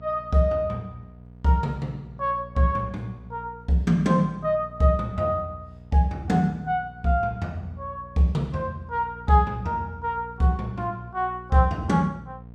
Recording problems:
hum; 60 Hz, harmonics up to 720 Hz, SNR 19 dB

